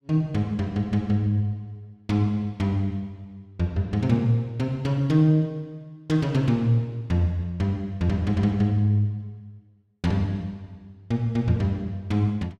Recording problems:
none

